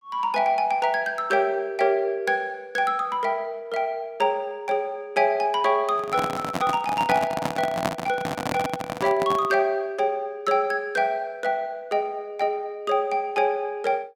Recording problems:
microphone handling noise; from 6 to 9.5 s; peak +3 dB vs average level

